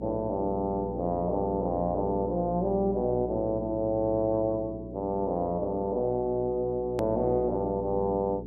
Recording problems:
hum; 60 Hz, harmonics up to 420 Hz, SNR 9 dB
edit click; at 7 s

